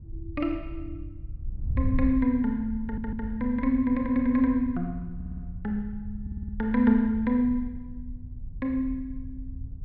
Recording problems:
treble cut off; nothing above 5.5 kHz
wind noise; below 86 Hz, SNR 11 dB
audio stuttering; at 3 s, at 5 s and at 6 s

